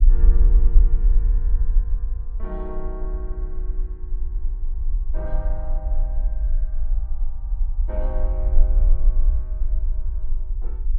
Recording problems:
low-frequency rumble; below 44 Hz, strongest tone 22 Hz, SNR -15 dB

